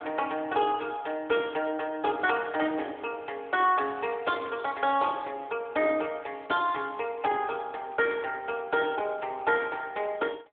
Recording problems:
phone line; 280 Hz to 3.6 kHz, AMR-NB

